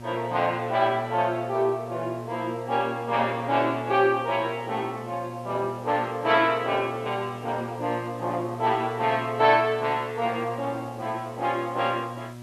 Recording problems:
hum; 60 Hz, harmonics up to 1.3 kHz, SNR 13 dB
hiss; slope 0 dB per octave, SNR 28 dB

